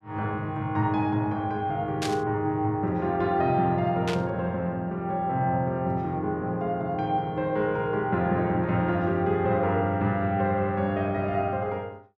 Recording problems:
static burst; at 2 s and at 4 s; peak -2 dB vs average level

